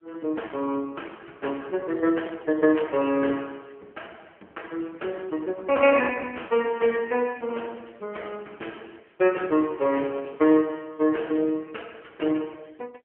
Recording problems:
telephone audio; 240 Hz to 3.2 kHz, AMR-NB

